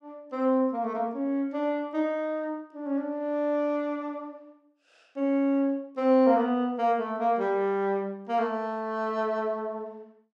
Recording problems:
none

